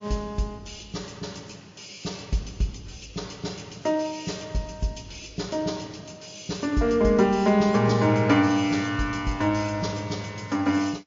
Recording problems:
lossy compression; MP3, log-spectral distance 7 dB, nothing above 6.2 kHz

